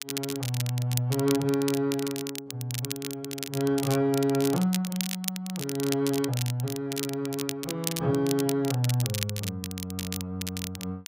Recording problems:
crackle; vinyl, SNR 7 dB

